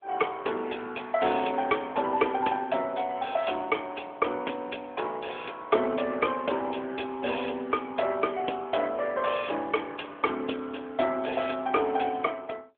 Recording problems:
phone line; 260 Hz to 3.4 kHz, AMR-NB

